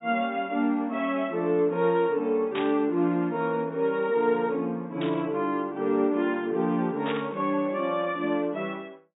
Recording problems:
treble missing; nothing above 4 kHz
burst of static; at 2.5 s, at 5 s and at 7 s; peak -4 dB vs average level

